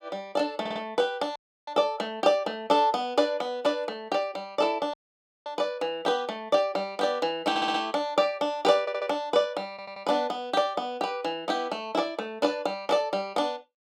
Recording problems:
audio stuttering; 4 times, first at 0.5 s
dropout; at 1.5 s and at 5 s for 0.5 s

